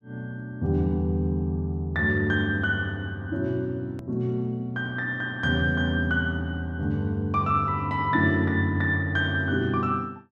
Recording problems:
click at an edit; at 4 s

